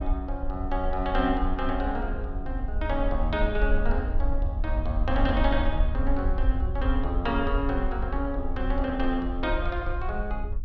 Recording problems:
low-frequency rumble; below 58 Hz, SNR 1 dB

